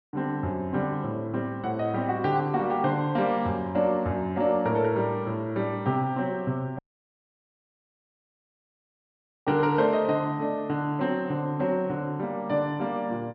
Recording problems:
treble missing; nothing above 5.5 kHz
dropout; at 7 s for 2.5 s

